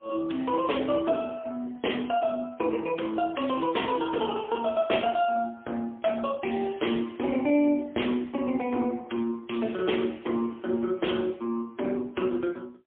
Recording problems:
phone line; 240 Hz to 3.4 kHz, AMR-NB, then MP3

